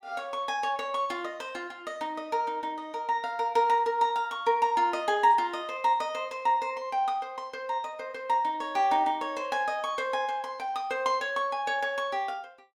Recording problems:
none

